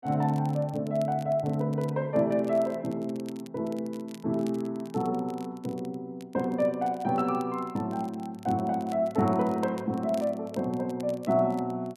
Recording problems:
crackle; vinyl, SNR 25 dB

